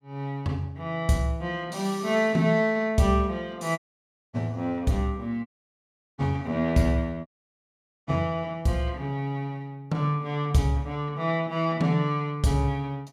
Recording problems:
audio cutting out; at 4 s for 0.5 s, at 5.5 s for 0.5 s and at 7.5 s for 1 s

